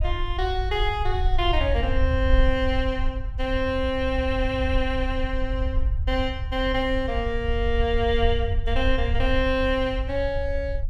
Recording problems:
low-frequency rumble; below 70 Hz, SNR 3 dB

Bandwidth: 15.5 kHz